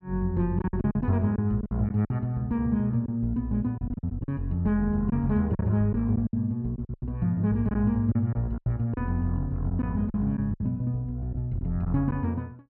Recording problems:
packet loss; 9% of the sound replaced, filled with silence

